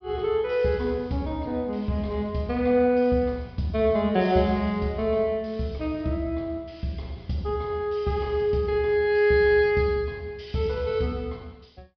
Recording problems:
treble missing; nothing above 5.5 kHz

